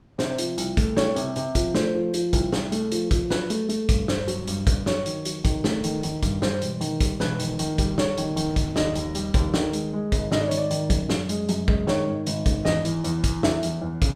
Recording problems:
wind noise; below 300 Hz, SNR 21 dB

